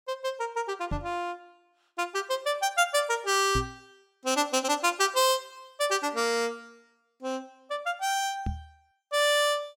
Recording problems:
microphone thump; at 1 s, at 3.5 s and at 8.5 s; peak 0 dB vs average level

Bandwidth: 17 kHz